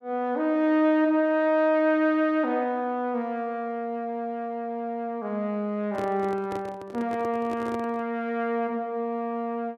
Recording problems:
microphone handling noise; from 6 to 8 s; peak -6 dB vs average level

